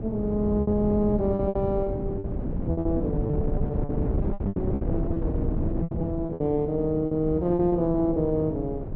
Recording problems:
wind noise; below 250 Hz, SNR 3 dB
packet loss; 13% of the sound replaced, filled with repeated pitch periods

